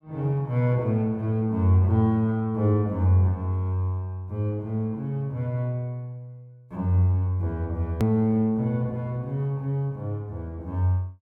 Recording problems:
hard cut with a click; at 8 s

